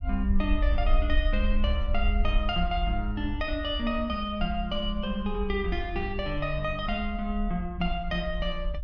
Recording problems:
low-frequency rumble; below 56 Hz, SNR 2 dB

